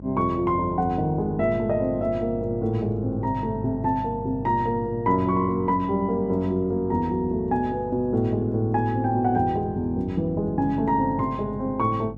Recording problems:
electrical hum; 50 Hz, harmonics up to 600 Hz, SNR 13 dB

